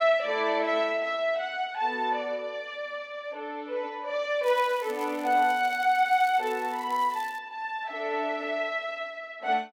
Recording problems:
crackle; from 4.5 to 7.5 s; loose cable, SNR 21 dB

